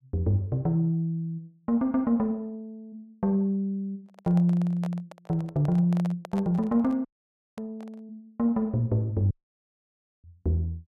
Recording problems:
microphone handling noise; from 4 to 8 s; peak -9 dB vs average level
dropout; at 7 s for 0.5 s and at 9.5 s for 1 s

